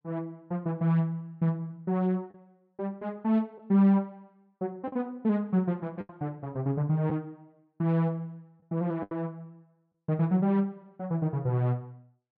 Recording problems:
lost packets; 3% of the sound replaced, filled with the last packet

